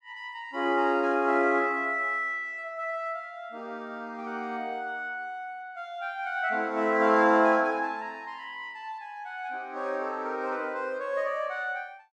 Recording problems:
none

